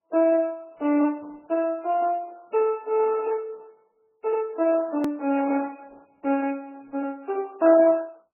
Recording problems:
lossy codec; Opus, then MP3, log-spectral distance 3 dB
edit click; at 5 s

